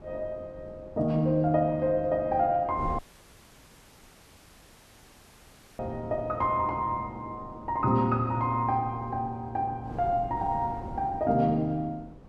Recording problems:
wind noise; below 360 Hz, SNR 17 dB
dropout; at 3 s for 3 s

